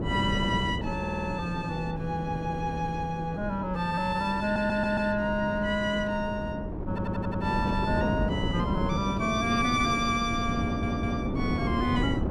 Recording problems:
wind noise; below 340 Hz, SNR 4 dB
stutter; 4 times, first at 1 s

